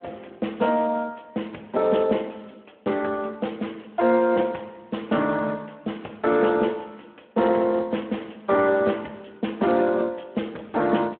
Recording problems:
phone line; 260 Hz to 3.2 kHz, Speex

